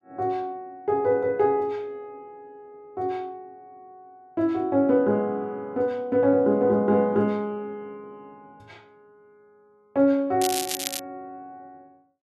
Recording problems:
crackle; at 10 s; loose cable, SNR 5 dB

